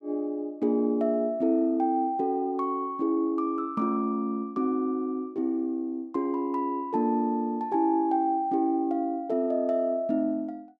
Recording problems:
none

